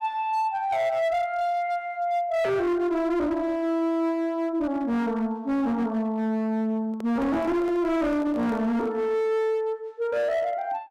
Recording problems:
distorted audio; hard clipping, signal-to-distortion ratio 10 dB
handling noise; from 7 to 9 s; peak -10 dB vs average level

